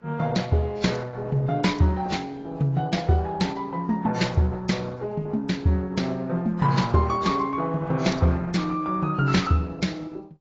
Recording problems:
lossy compression; Opus, then AAC, log-spectral distance 3 dB, nothing above 7.3 kHz

